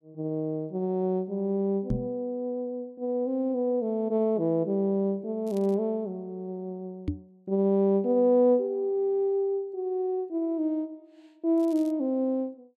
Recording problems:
microphone bump; at 2 s and at 7 s; peak +2 dB vs average level
crackle; at 5.5 s and at 12 s; loose cable, SNR 29 dB

